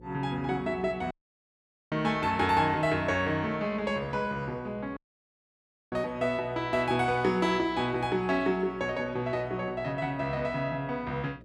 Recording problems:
hum; 60 Hz, harmonics up to 540 Hz, SNR 22 dB
dropout; at 1 s for 1 s and at 5 s for 1 s

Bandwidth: 13.5 kHz